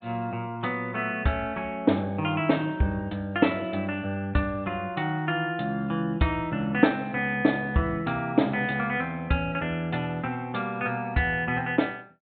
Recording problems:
treble cut off; nothing above 4 kHz

